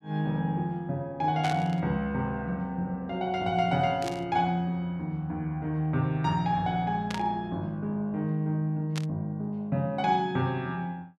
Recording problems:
burst of static; 4 times, first at 1.5 s; peak -3 dB vs average level

